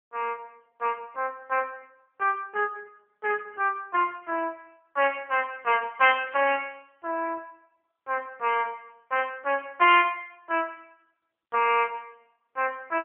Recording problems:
phone line; 300 Hz to 3 kHz, AMR-NB

